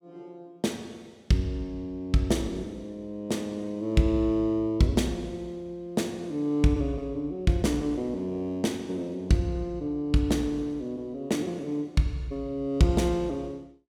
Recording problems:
none

